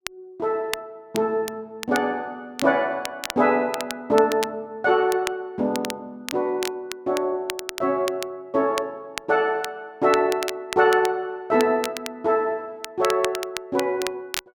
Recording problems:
crackle; vinyl, SNR 11 dB

